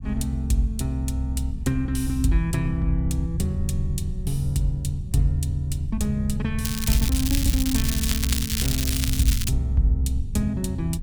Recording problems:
rumble; below 110 Hz, SNR 7 dB
crackle; from 6.5 to 9.5 s; loose cable, SNR 3 dB

